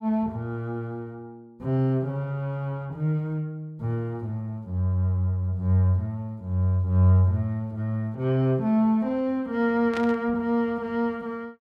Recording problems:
static burst; at 10 s; peak -5 dB vs average level

